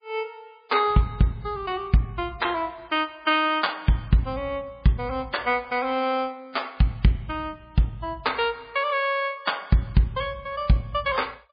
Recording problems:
codec artefacts; MP3, log-spectral distance 3 dB, nothing above 4.8 kHz

